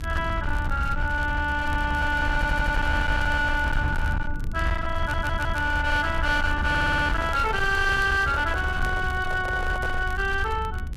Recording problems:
distortion; hard clipping, signal-to-distortion ratio 11 dB
low-frequency rumble; below 94 Hz, SNR 5 dB
crackling; vinyl, SNR 25 dB
audio stuttering; at 2.5 s, at 5 s and at 6.5 s
microphone handling noise; from 7 to 10 s; peak -7 dB vs average level

